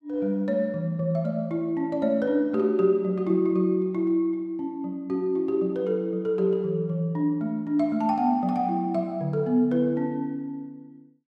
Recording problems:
none

